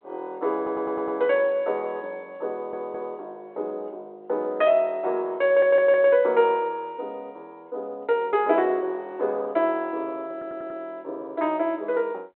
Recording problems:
phone line; 300 Hz to 3.4 kHz, G.726
audio stuttering; 4 times, first at 0.5 s

